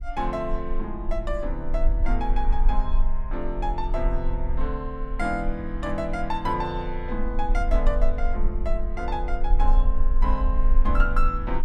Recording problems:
low-frequency rumble; below 36 Hz, strongest tone 18 Hz, SNR -2 dB

